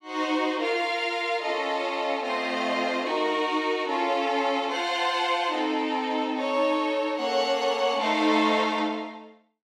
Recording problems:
none

